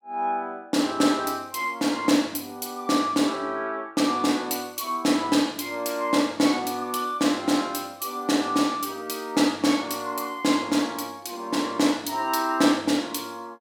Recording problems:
none

